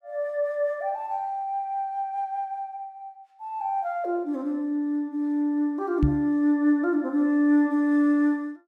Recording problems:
microphone bump; at 6 s; peak +6 dB vs average level

